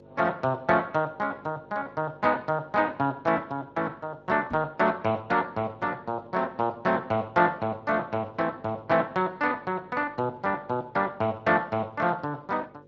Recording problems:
lossy compression; Speex, log-spectral distance 3 dB
electrical hum; 50 Hz, harmonics up to 600 Hz, SNR 24 dB
knock on the microphone; at 4.5 s; peak -6 dB vs average level

